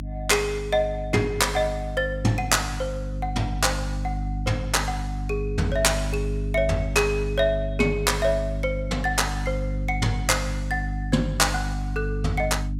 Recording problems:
hum; 50 Hz, harmonics up to 300 Hz, SNR 5 dB

